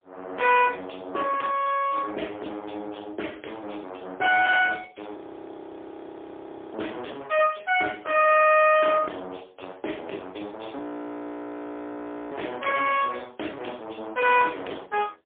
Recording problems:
telephone audio; 280 Hz to 3.4 kHz, AMR-NB, then MP3
distortion; soft clipping, signal-to-distortion ratio 12 dB
frozen audio; at 5 s for 1.5 s and at 11 s for 1.5 s

